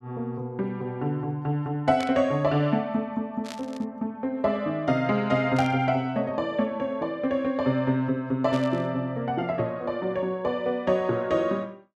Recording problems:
burst of static; 4 times, first at 2 s; peak -7 dB vs average level

